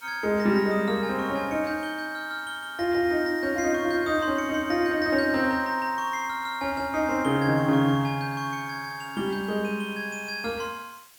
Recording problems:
hiss; slope +1 dB per octave, SNR 25 dB

